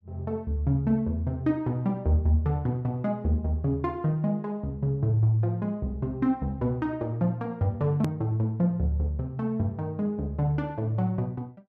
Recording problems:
edit click; at 8 s

